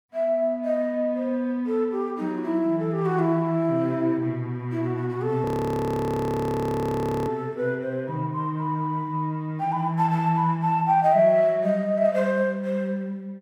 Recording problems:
frozen audio; at 5.5 s for 2 s

